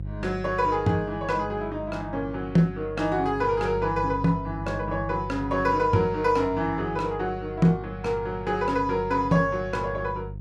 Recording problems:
hum; 50 Hz, harmonics up to 350 Hz, SNR 12 dB

